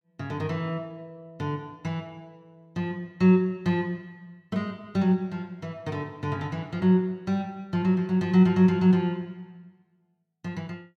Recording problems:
none

